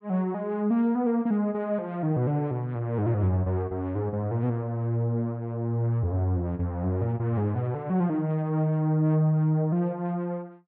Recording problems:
none

